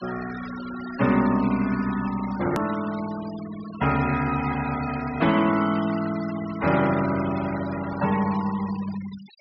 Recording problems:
low-pass filter; nothing above 5.5 kHz
noise reduction artefacts; signal-to-artefact ratio 14 dB
click at an edit; at 2.5 s

